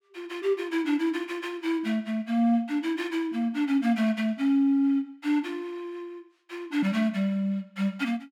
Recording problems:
none

